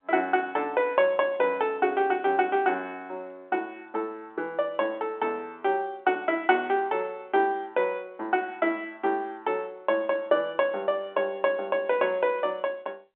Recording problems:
telephone audio; 280 Hz to 3.7 kHz, G.711

